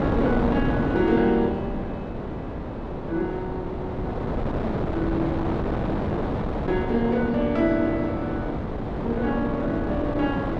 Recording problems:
wind on the microphone; below 580 Hz, SNR 2 dB

